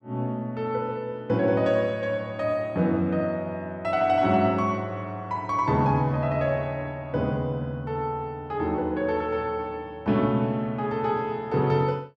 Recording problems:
none

